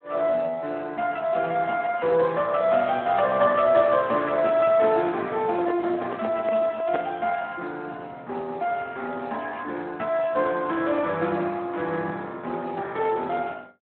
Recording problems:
telephone audio; 220 Hz to 3.6 kHz, Speex
handling noise; from 5.5 to 7 s; peak 0 dB vs average level

